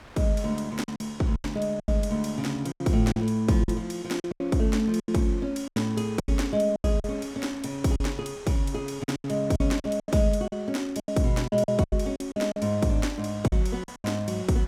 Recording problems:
wind noise; below 2 kHz, SNR 22 dB
packet loss; 12% of the sound replaced, filled with silence

